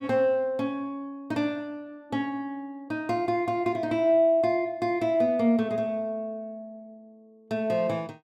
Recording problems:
none

